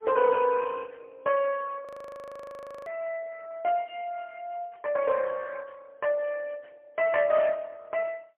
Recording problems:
telephone audio; 280 Hz to 3 kHz, AMR-NB, then MP3
frozen audio; at 2 s for 1 s

